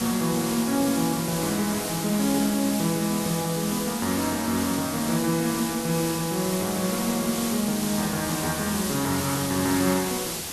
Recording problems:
background hiss; slope -1 dB per octave, SNR 4 dB

